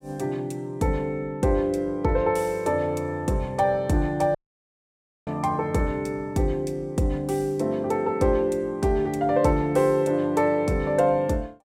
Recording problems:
dropout; at 4.5 s for 1 s

